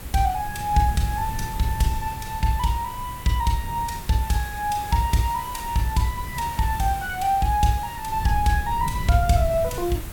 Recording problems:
hiss; slope -3 dB per octave, SNR 15 dB
wind on the microphone; below 130 Hz, SNR 11 dB

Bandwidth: 17 kHz